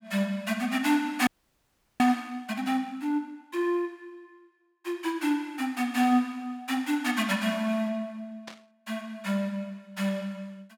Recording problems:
audio freezing; at 1.5 s for 0.5 s
static burst; at 8.5 s; peak -9 dB vs average level

